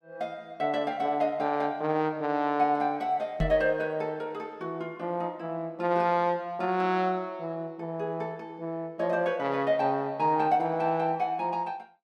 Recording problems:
microphone bump; at 3.5 s; peak +3 dB vs average level

